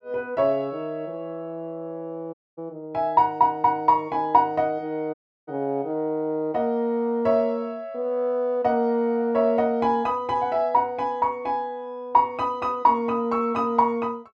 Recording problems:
dropout; at 2.5 s and at 5 s

